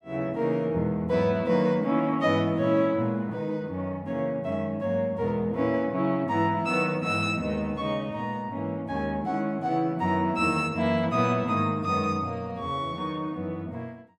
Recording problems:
none

